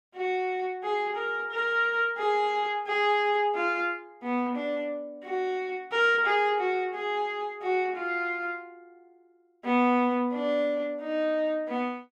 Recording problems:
none

